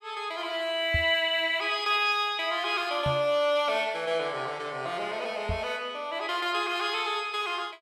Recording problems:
microphone thump; at 1 s, at 3 s and at 5.5 s; peak +1 dB vs average level

